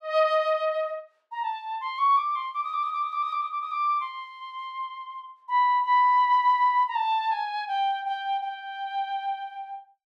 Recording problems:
none

